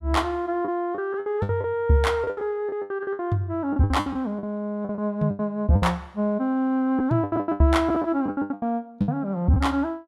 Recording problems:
lost packets; 16% of the sound replaced, filled with the last packet

